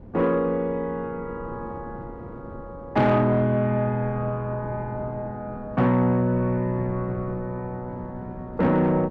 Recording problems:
distorted audio; soft clipping, signal-to-distortion ratio 11 dB
wind noise; below 340 Hz, SNR 16 dB

